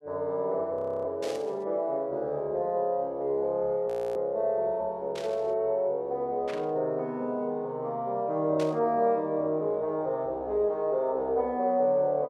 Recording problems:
audio freezing; at 1 s and at 4 s
burst of static; 4 times, first at 1 s; peak -8 dB vs average level

